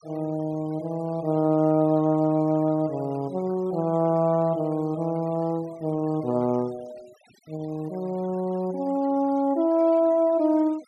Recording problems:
noise reduction artefacts; signal-to-artefact ratio 26 dB

